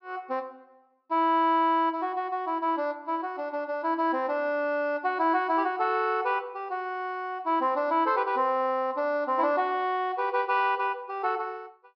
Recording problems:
treble cut off; nothing above 5.5 kHz

